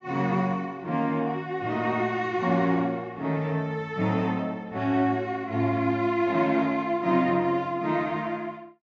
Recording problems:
treble cut off; nothing above 8 kHz

